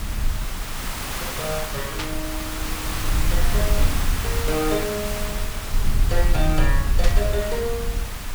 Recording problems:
background hiss; SNR 1 dB
rumble; below 56 Hz, SNR -2 dB
burst of static; at 2 s and at 7 s; peak +4 dB vs average level

